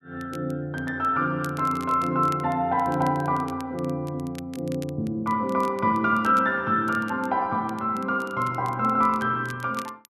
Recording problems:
crackling; vinyl, SNR 24 dB

